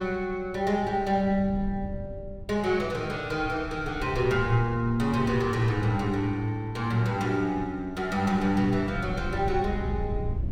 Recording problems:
wind on the microphone; below 110 Hz, SNR 12 dB

